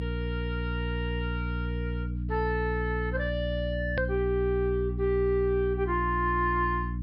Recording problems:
low-pass filter; nothing above 5.5 kHz
hum; 60 Hz, harmonics up to 300 Hz, SNR 3 dB
click at an edit; at 4 s

